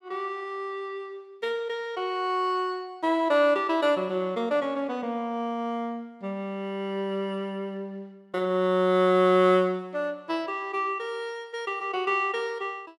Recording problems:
none

